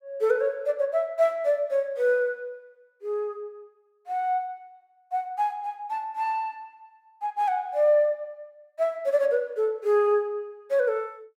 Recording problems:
none

